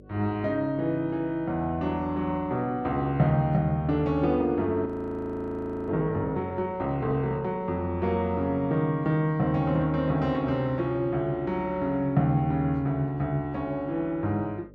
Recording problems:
hum; 50 Hz, harmonics up to 600 Hz, SNR 24 dB
audio freezing; at 5 s for 1 s

